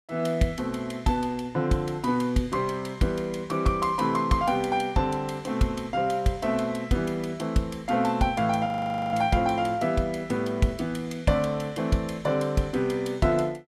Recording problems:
frozen audio; at 8.5 s

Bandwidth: 14.5 kHz